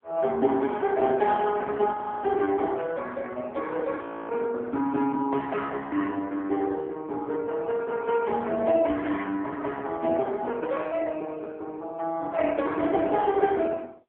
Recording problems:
telephone audio; 190 Hz to 3.4 kHz, AMR-NB
audio freezing; at 2 s and at 4 s

